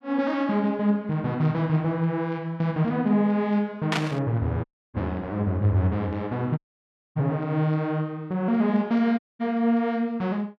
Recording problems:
burst of static; at 4 s; peak +3 dB vs average level
dropout; at 4.5 s, at 6.5 s for 0.5 s and at 9 s

